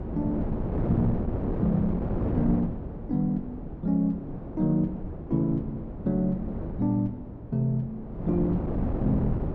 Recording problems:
wind noise; below 330 Hz, SNR 4 dB

